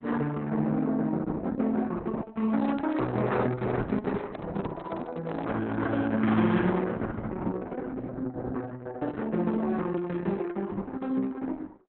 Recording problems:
lossy codec; Opus, log-spectral distance 3 dB, nothing above 3.7 kHz
handling noise; from 2.5 to 6 s; peak -2 dB vs average level

